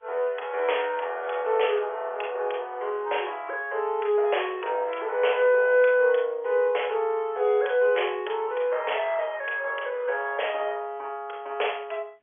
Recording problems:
phone line; 370 Hz to 3.4 kHz, G.711

